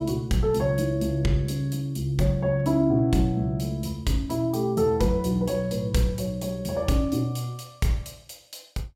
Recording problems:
none

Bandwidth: 16 kHz